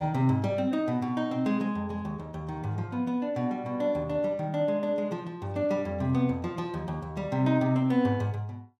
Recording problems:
none

